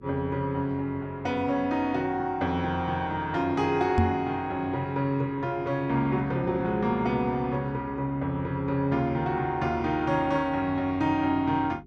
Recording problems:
hum; 50 Hz, harmonics up to 400 Hz, SNR 23 dB
knock on the microphone; at 4 s; peak +7 dB vs average level

